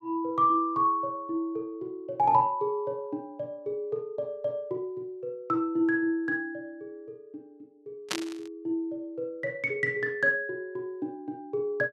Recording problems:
static burst; at 8 s; peak +4 dB vs average level

